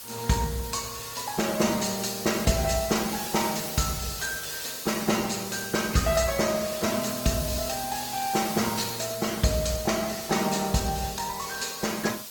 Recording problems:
lossy compression; Opus, log-spectral distance 9 dB, nothing above 18.3 kHz
background hiss; SNR 8 dB

